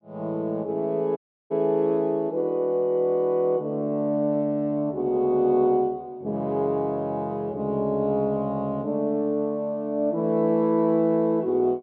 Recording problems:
audio cutting out; at 1 s

